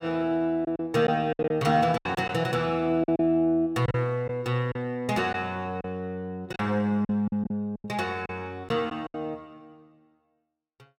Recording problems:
packet loss; 8% of the sound replaced, filled with silence

